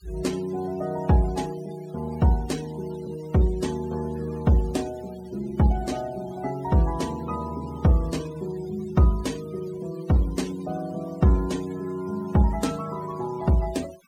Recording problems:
denoising artefacts; signal-to-artefact ratio 20 dB

